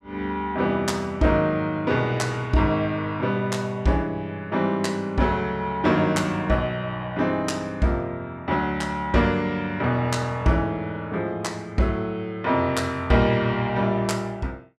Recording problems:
none

